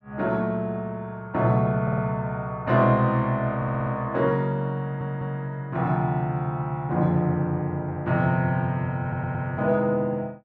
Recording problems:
stutter; 4 times, first at 2 s

